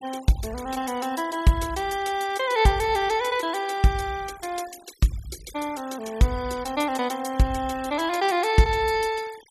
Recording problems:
noise reduction artefacts; signal-to-artefact ratio 19 dB

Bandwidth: 15 kHz